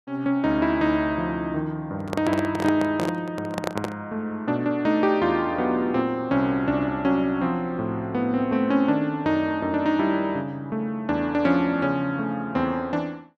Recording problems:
handling noise; from 2 to 4 s; peak 0 dB vs average level

